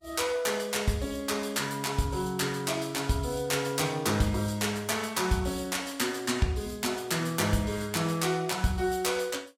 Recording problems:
codec artefacts; Vorbis, log-spectral distance 4 dB, nothing above 15.1 kHz

